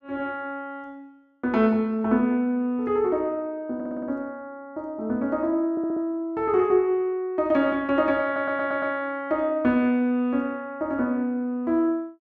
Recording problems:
audio stuttering; at 4 s, at 5.5 s and at 8.5 s

